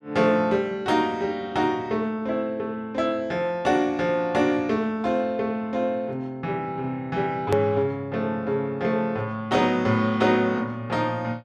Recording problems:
click at an edit; at 7.5 s

